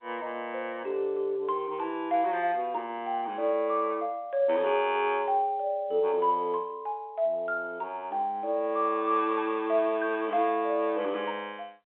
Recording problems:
telephone audio; 280 Hz to 3.6 kHz, G.711

